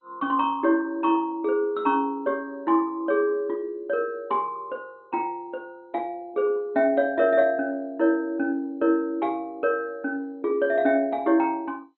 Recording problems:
codec artefacts; MP2, log-spectral distance 2 dB, nothing above 3.6 kHz

